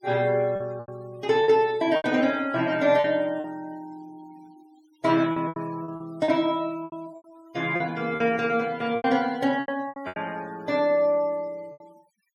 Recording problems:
denoising artefacts; signal-to-artefact ratio 25 dB
packet loss; 11% of the sound replaced, filled with repeated pitch periods

